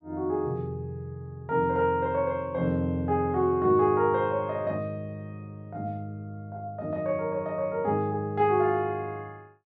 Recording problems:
none

